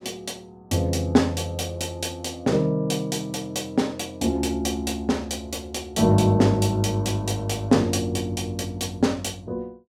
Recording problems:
none

